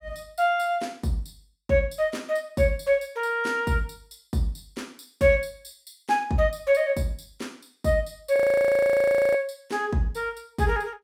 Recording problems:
audio freezing; at 8.5 s for 1 s

